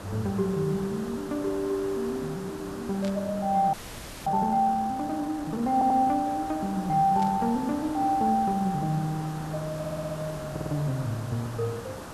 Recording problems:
background hiss; SNR 13 dB
burst of static; at 3 s and at 7 s; peak -11 dB vs average level
audio freezing; at 3.5 s for 0.5 s
audio stuttering; at 5.5 s, at 10 s and at 11 s

